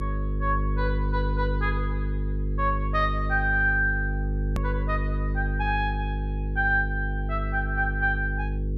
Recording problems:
mains hum; 50 Hz, harmonics up to 500 Hz, SNR 1 dB
click at an edit; at 4.5 s

